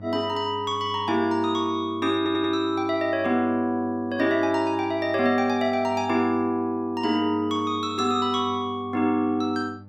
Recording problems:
mains hum; 50 Hz, harmonics up to 600 Hz, SNR 19 dB
audio stuttering; at 2 s

